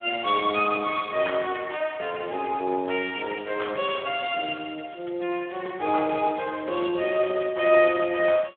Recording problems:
telephone audio; 300 Hz to 3.6 kHz, Speex

